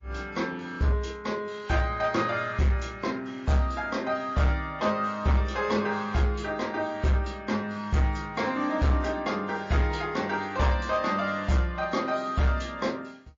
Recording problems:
lossy compression; MP3, log-spectral distance 2 dB, nothing above 7.1 kHz
distortion; hard clipping, uneven, signal-to-distortion ratio 12 dB

